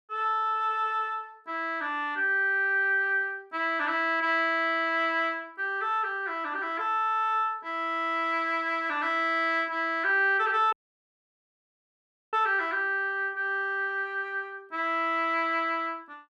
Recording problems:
audio cutting out; at 11 s for 1.5 s

